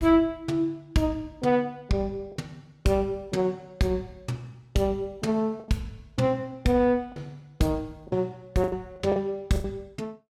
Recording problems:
packet loss; 5% of the sound replaced, filled with the last packet

